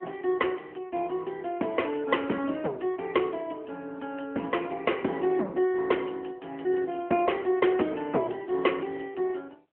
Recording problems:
telephone audio; 240 Hz to 3.2 kHz, AMR-NB

